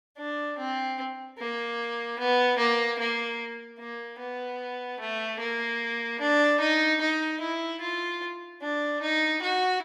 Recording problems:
none

